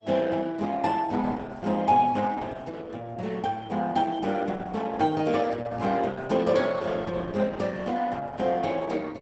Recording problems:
lossy codec; Opus, log-spectral distance 4 dB, nothing above 8 kHz

